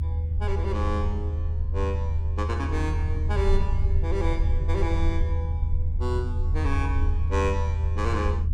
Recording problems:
low-frequency rumble; below 80 Hz, SNR -5 dB

